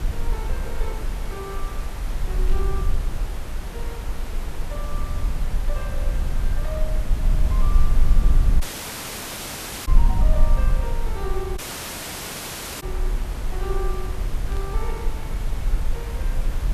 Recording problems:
background hiss; slope -5 dB per octave, SNR 1 dB
rumble; below 46 Hz, SNR -11 dB
static burst; at 2.5 s and at 15 s; peak -4 dB vs average level
dropout; at 8.5 s for 1.5 s and at 12 s for 1 s

